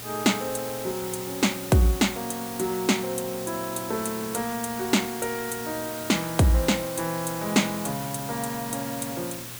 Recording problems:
electrical hum; 60 Hz, harmonics up to 840 Hz, SNR 20 dB
hiss; slope -1 dB per octave, SNR 9 dB

